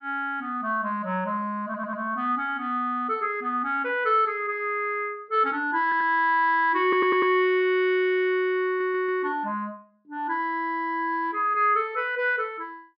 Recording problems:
treble missing; nothing above 5.5 kHz
stutter; 4 times, first at 1.5 s

